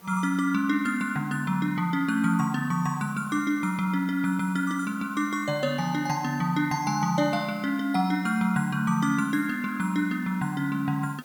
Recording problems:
background hiss; slope -4 dB per octave, SNR 24 dB

